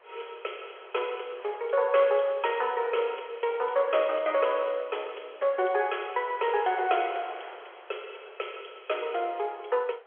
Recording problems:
phone line; 370 Hz to 3.4 kHz, G.711
wind noise; below 1.8 kHz, SNR 23 dB

